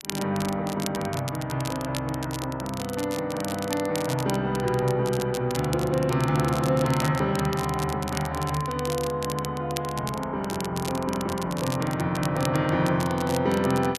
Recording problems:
crackle; vinyl, SNR 12 dB

